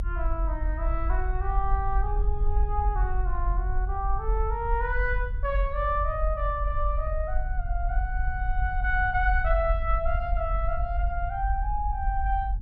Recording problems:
low-frequency rumble; below 50 Hz, SNR -1 dB

